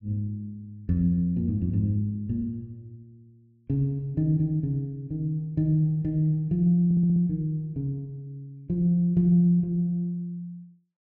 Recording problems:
stutter; at 7 s

